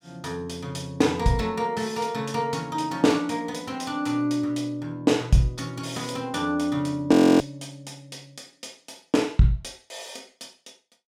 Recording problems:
frozen audio; at 7 s

